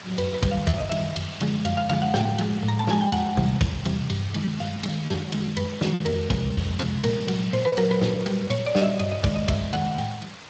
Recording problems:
lossy compression; Speex, log-spectral distance 9 dB, nothing above 7.6 kHz
hiss; SNR 17 dB
lost packets; 7% of the sound replaced, filled with repeated pitch periods

